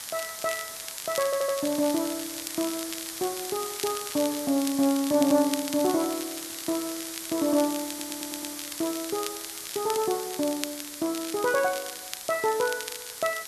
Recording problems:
hiss; SNR 8 dB
crackle; vinyl, SNR 10 dB
audio stuttering; at 1.5 s and at 8 s

